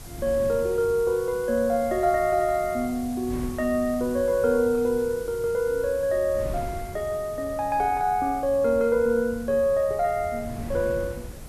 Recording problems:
hiss; SNR 22 dB
wind on the microphone; below 190 Hz, SNR 16 dB

